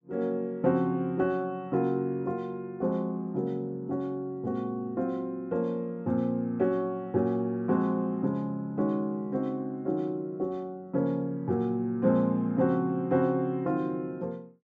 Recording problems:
none

